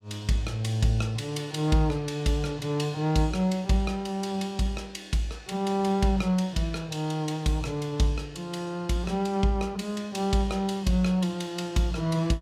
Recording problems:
none

